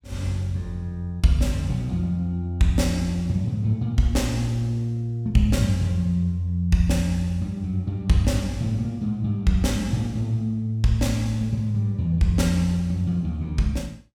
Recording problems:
none

